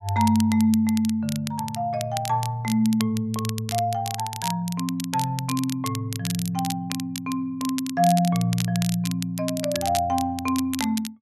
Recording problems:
crackling; vinyl, SNR 10 dB

